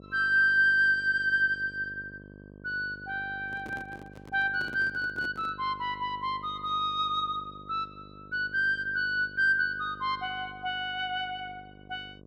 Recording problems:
hum; 50 Hz, harmonics up to 1.1 kHz, SNR 22 dB
handling noise; from 3.5 to 5.5 s; peak -11 dB vs average level

